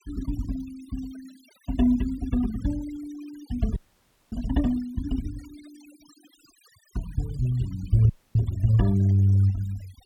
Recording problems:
denoising artefacts; signal-to-artefact ratio 22 dB
audio freezing; at 4 s for 0.5 s and at 8 s

